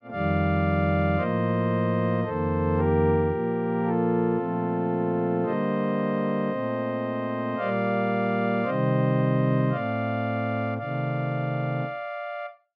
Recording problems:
none

